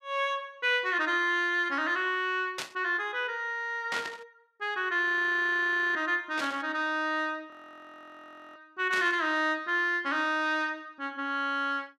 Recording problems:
burst of static; 4 times, first at 2.5 s; peak -2 dB vs average level
audio freezing; at 5 s for 1 s and at 7.5 s for 1 s

